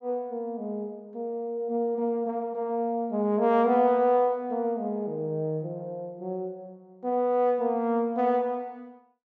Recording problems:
treble cut off; nothing above 7.7 kHz

